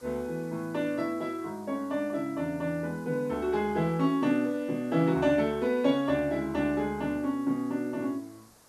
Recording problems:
background hiss; SNR 27 dB

